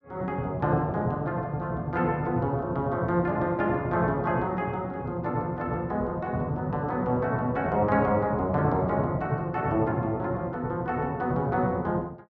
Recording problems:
none

